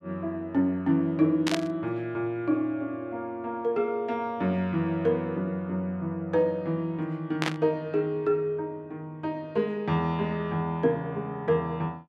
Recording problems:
burst of static; at 1.5 s and at 7.5 s; peak +3 dB vs average level

